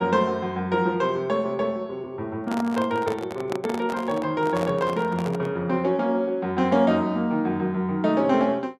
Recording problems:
handling noise; from 2.5 to 5.5 s; peak -3 dB vs average level

